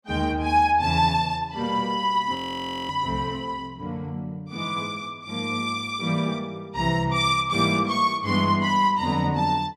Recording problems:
frozen audio; at 2.5 s for 0.5 s

